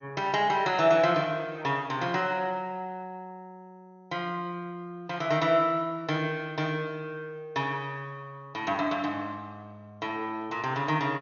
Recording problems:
codec artefacts; MP2, log-spectral distance 2 dB, nothing above 6.5 kHz

